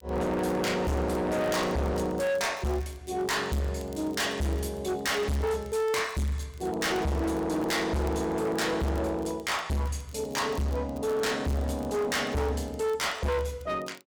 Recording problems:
distortion; hard clipping, uneven, signal-to-distortion ratio 6 dB
crackle; vinyl, SNR 25 dB

